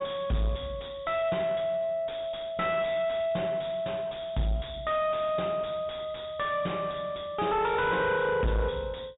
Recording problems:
treble missing; nothing above 4 kHz
distorted audio; soft clipping, signal-to-distortion ratio 7 dB

